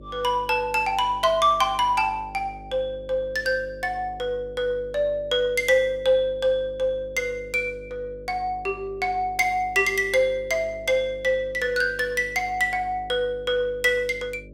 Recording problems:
hum; 50 Hz, harmonics up to 600 Hz, SNR 21 dB

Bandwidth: 16 kHz